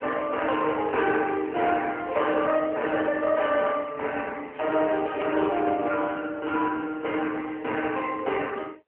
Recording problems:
phone line; 260 Hz to 3.2 kHz, AMR-NB
static burst; at 2.5 s, at 4.5 s and at 6 s; peak -15 dB vs average level

